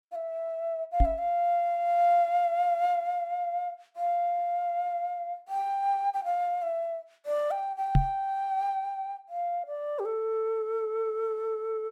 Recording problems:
knock on the microphone; at 1 s and at 8 s; peak +9 dB vs average level

